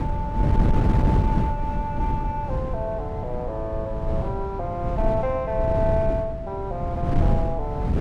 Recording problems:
wind noise; below 160 Hz, SNR -3 dB

